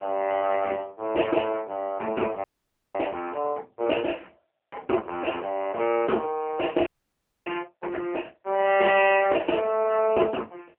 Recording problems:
phone line; 260 Hz to 3.1 kHz, AMR-NB
frozen audio; at 2.5 s for 0.5 s and at 7 s for 0.5 s

